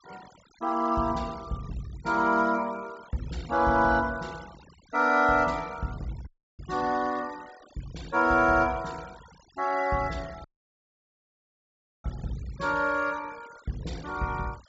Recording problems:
treble cut off; nothing above 8 kHz
noise reduction artefacts; signal-to-artefact ratio 23 dB
audio cutting out; at 6.5 s and at 10 s for 1.5 s

